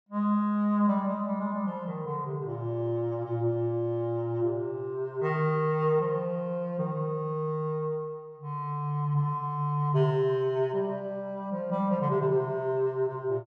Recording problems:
none

